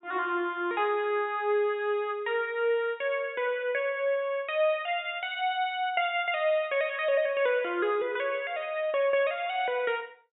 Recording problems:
treble missing; nothing above 4 kHz

